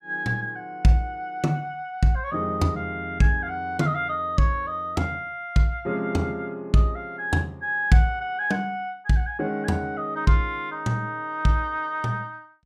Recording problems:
none

